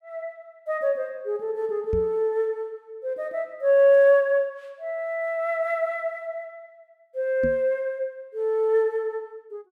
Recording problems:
microphone thump; at 2 s and at 7.5 s; peak -2 dB vs average level

